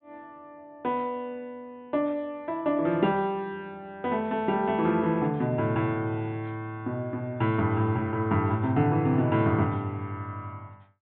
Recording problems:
low-pass filter; nothing above 4 kHz

